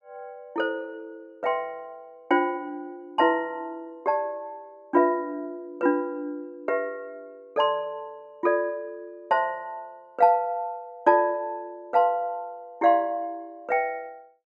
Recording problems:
none

